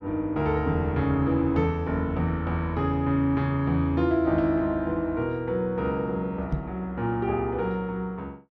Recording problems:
knock on the microphone; at 6.5 s; peak +2 dB vs average level

